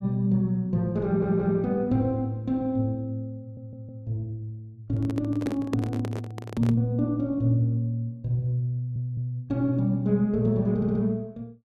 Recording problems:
audio stuttering; 4 times, first at 1 s
handling noise; from 5 to 7 s; peak -1 dB vs average level

